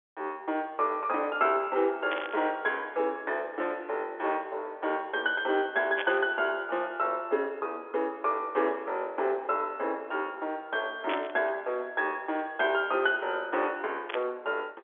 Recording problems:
telephone audio; 320 Hz to 3.5 kHz, G.711
burst of static; 4 times, first at 2 s; peak -1 dB vs average level

